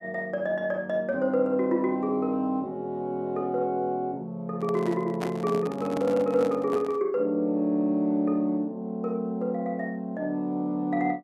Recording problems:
microphone handling noise; from 4.5 to 7 s; peak -2 dB vs average level

